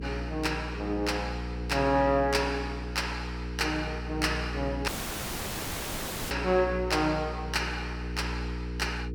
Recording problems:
hum; 60 Hz, harmonics up to 480 Hz, SNR 7 dB
dropout; at 5 s for 1.5 s

